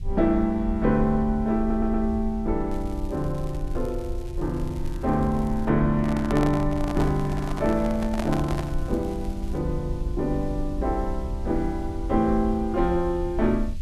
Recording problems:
background hiss; SNR 30 dB
low-frequency rumble; below 64 Hz, SNR 8 dB
stutter; at 1.5 s
crackling; from 2.5 to 5.5 s and from 7 to 9.5 s; loose cable, SNR 26 dB
microphone handling noise; from 6 to 9 s; peak -1 dB vs average level

